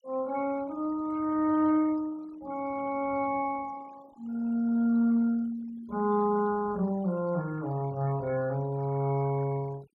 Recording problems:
denoising artefacts; signal-to-artefact ratio 24 dB

